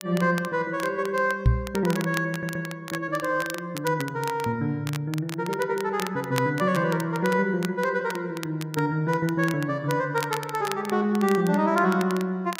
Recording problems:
crackle; vinyl, SNR 14 dB
microphone bump; at 1.5 s; peak +9 dB vs average level
stutter; at 2.5 s

